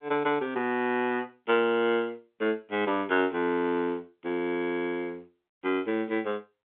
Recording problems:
telephone audio; 170 Hz to 3.5 kHz, G.711

